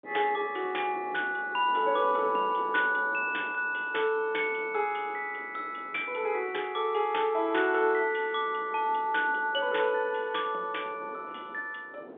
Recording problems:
telephone audio; 280 Hz to 3.6 kHz, G.711
wind on the microphone; below 610 Hz, SNR 19 dB

